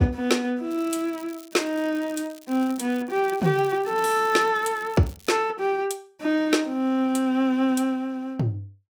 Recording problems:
crackling; from 0.5 to 5.5 s; loose cable, SNR 23 dB

